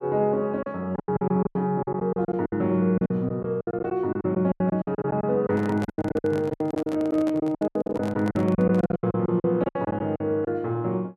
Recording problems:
packet loss; 19% of the sound replaced, filled with silence
handling noise; from 5.5 to 9 s; peak -5 dB vs average level

